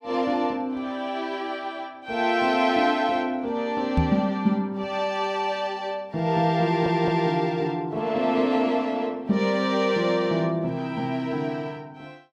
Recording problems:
knock on the microphone; at 4 s; peak +5 dB vs average level
audio stuttering; at 6.5 s

